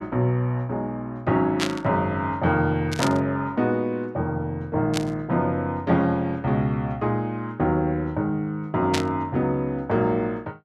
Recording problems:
static burst; 4 times, first at 1.5 s; peak +3 dB vs average level

